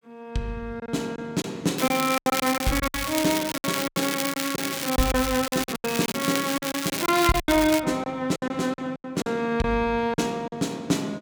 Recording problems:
packet loss; 12% of the sound replaced, filled with silence
crackling; from 2 to 8 s; loose cable, SNR 4 dB

